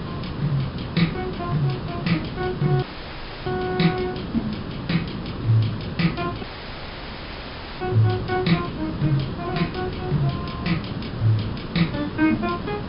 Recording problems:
treble cut off; nothing above 5.5 kHz
hiss; slope -6 dB per octave, SNR 6 dB
audio cutting out; at 3 s for 0.5 s and at 6.5 s for 1.5 s

